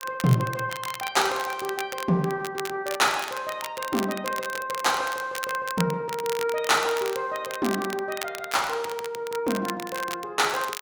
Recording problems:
crackling; vinyl, SNR 10 dB

